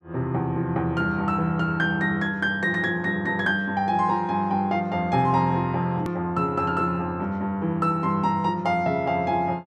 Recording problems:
edit click; at 6 s

